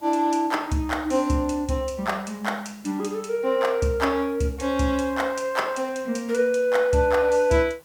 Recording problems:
hiss; SNR 29 dB

